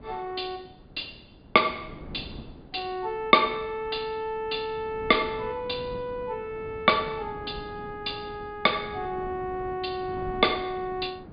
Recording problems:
low-pass filter; nothing above 4.9 kHz
wind on the microphone; below 360 Hz, SNR 17 dB

